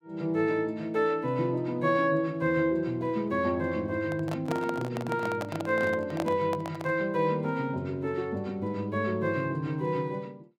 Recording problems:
microphone handling noise; from 4 to 7 s; peak -1 dB vs average level

